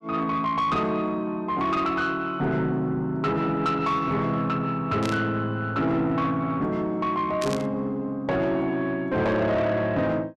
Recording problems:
distortion; soft clipping, signal-to-distortion ratio 10 dB
burst of static; at 5 s and at 7.5 s; peak -3 dB vs average level

